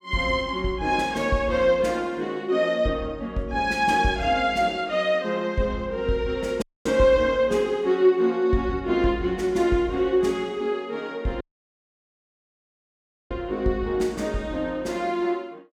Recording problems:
audio cutting out; at 6.5 s and at 11 s for 2 s

